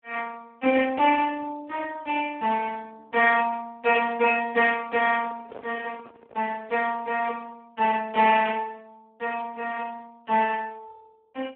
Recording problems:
telephone audio; 240 Hz to 2.8 kHz, Speex
microphone handling noise; from 5 to 6.5 s; peak -11 dB vs average level

